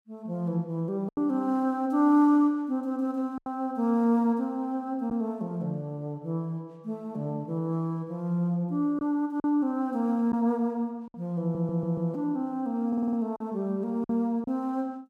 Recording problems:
packet loss; 3% of the sound replaced, filled with silence
audio stuttering; at 11 s and at 13 s

